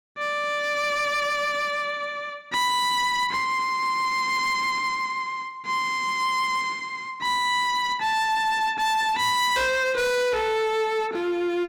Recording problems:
distortion; hard clipping, uneven, signal-to-distortion ratio 10 dB

